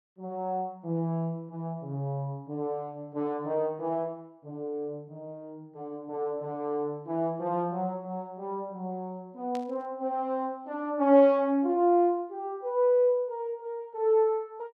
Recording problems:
static burst; at 9.5 s; peak -13 dB vs average level

